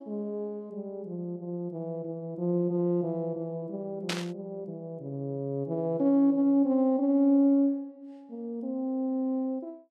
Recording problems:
static burst; at 4 s; peak +1 dB vs average level

